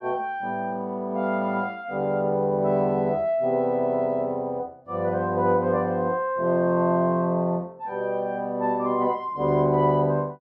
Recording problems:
none

